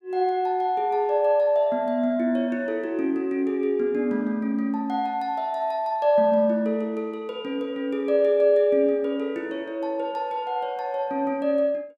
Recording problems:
none

